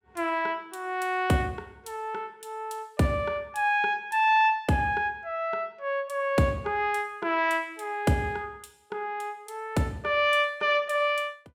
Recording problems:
none

